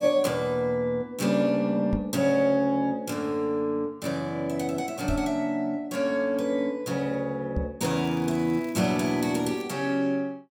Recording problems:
microphone bump; at 2 s, at 5 s and at 7.5 s; peak 0 dB vs average level
crackling; from 8 to 9.5 s; loose cable, SNR 26 dB

